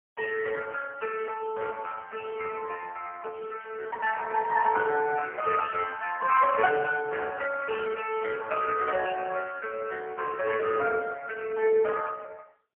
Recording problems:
telephone audio; 300 Hz to 3.1 kHz, AMR-NB, then MP3

